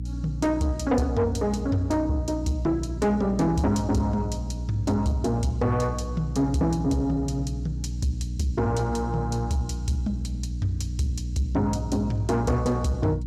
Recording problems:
distorted audio; soft clipping, signal-to-distortion ratio 12 dB
electrical hum; 60 Hz, harmonics up to 300 Hz, SNR 6 dB

